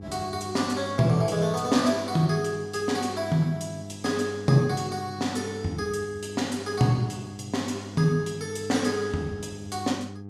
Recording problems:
electrical hum; 50 Hz, harmonics up to 800 Hz, SNR 13 dB

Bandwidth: 15.5 kHz